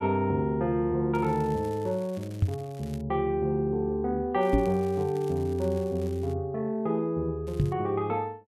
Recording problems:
crackle; from 1 to 3 s, from 4.5 to 6.5 s and at 7.5 s; loose cable, SNR 25 dB
knock on the microphone; at 2.5 s, at 4.5 s and at 7.5 s; peak +7 dB vs average level

